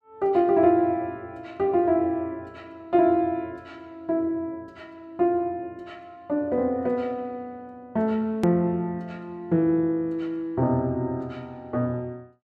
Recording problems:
hard cut with a click; at 8.5 s

